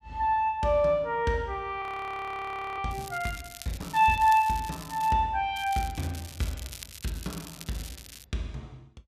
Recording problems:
audio freezing; at 2 s for 1 s
crackle; from 3 to 5 s and from 5.5 to 8.5 s; loose cable, SNR 16 dB

